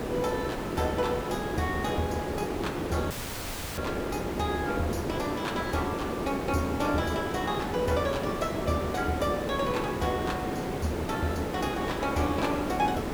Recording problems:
hiss; slope -8 dB per octave, SNR 1 dB
audio cutting out; at 3 s for 0.5 s

